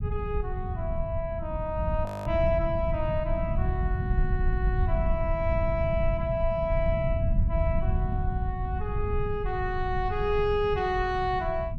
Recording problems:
low-frequency rumble; below 100 Hz, SNR 1 dB
audio freezing; at 2 s

